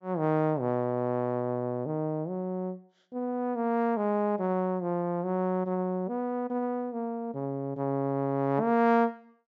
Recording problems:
treble cut off; nothing above 8 kHz

